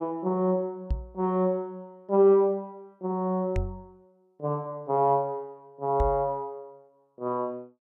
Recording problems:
knock on the microphone; at 1 s, at 3.5 s and at 6 s; peak +1 dB vs average level

